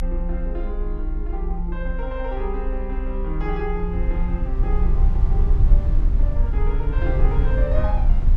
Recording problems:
low-frequency rumble; below 54 Hz, strongest tone 30 Hz, SNR -7 dB

